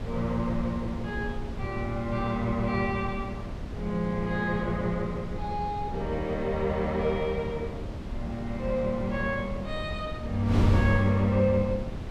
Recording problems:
wind noise; below 220 Hz, SNR 6 dB

